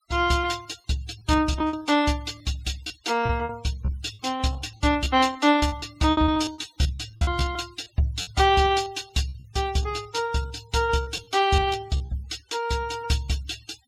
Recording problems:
noise reduction artefacts; signal-to-artefact ratio 21 dB
packet loss; 12% of the sound replaced, filled with repeated pitch periods

